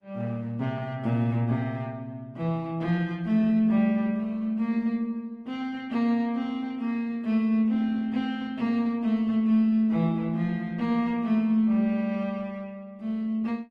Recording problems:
lossy codec; Opus, log-spectral distance 2 dB

